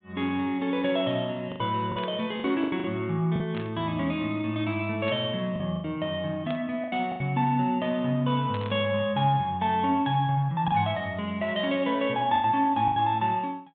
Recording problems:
low-pass filter; nothing above 4 kHz
lost packets; 6% of the sound replaced, filled with the last packet
burst of static; 5 times, first at 2 s; peak -8 dB vs average level

